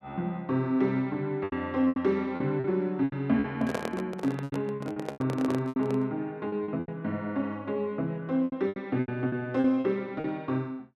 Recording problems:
lost packets; 11% of the sound replaced, filled with repeated pitch periods
microphone handling noise; from 3.5 to 6 s; peak +2 dB vs average level

